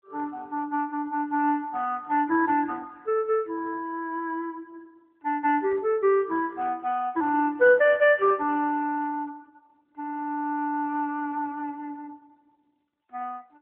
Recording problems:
telephone audio; 300 Hz to 3.5 kHz, AMR-NB

